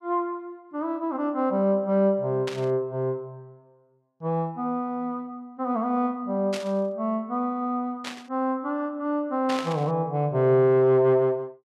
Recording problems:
burst of static; 4 times, first at 2.5 s; peak -4 dB vs average level

